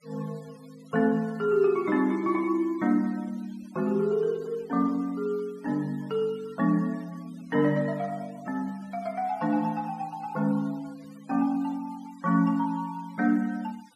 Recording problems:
denoising artefacts; signal-to-artefact ratio 26 dB

